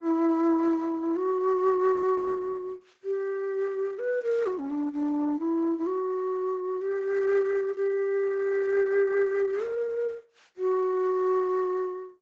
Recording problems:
lossy codec; AAC, then Opus, log-spectral distance 2 dB, nothing above 7.3 kHz

